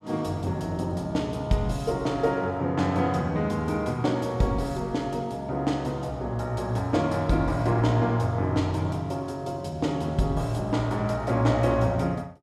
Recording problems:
none

